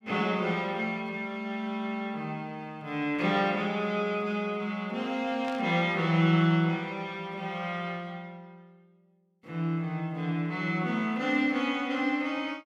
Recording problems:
burst of static; at 5.5 s; peak -10 dB vs average level

